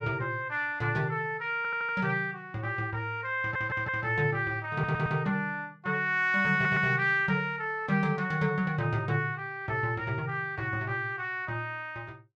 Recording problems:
audio stuttering; 4 times, first at 1.5 s

